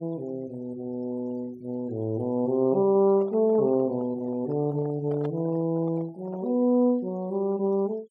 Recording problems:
denoising artefacts; signal-to-artefact ratio 27 dB
microphone handling noise; from 3 to 6.5 s; peak -8 dB vs average level

